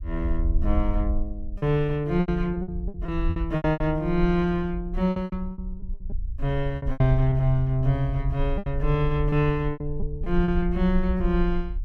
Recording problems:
rumble; below 56 Hz, SNR 6 dB
packet loss; 11% of the sound replaced, filled with repeated pitch periods

